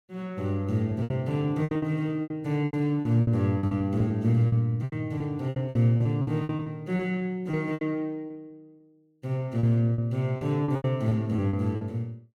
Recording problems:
packet loss; 15% of the sound replaced, filled with repeated pitch periods

